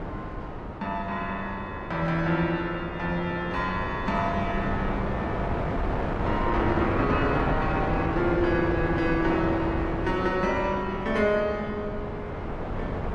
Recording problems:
codec artefacts; AAC, log-spectral distance 2 dB
wind noise; below 740 Hz, SNR 3 dB

